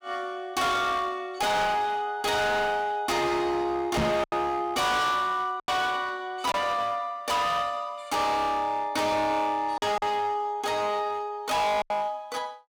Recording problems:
distorted audio; hard clipping, uneven, signal-to-distortion ratio 7 dB
packet loss; 3% of the sound replaced, filled with silence
microphone bump; at 4 s; peak +4 dB vs average level

